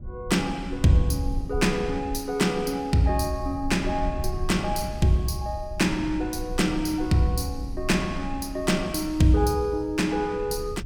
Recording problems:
rumble; below 76 Hz, SNR 12 dB

